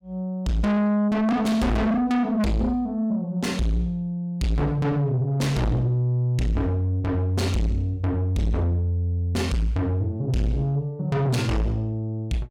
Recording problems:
distorted audio; soft clipping, signal-to-distortion ratio 6 dB

